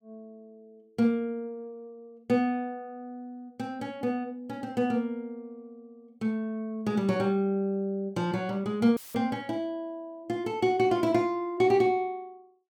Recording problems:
dropout; at 9 s; filled with static

